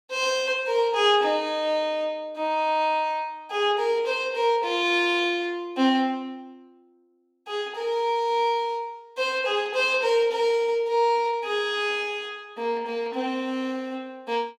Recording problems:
none

